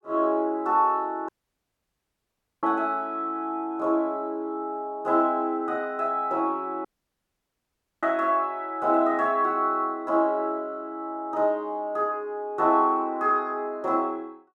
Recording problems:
dropout; at 1.5 s for 1.5 s and at 7 s for 1 s

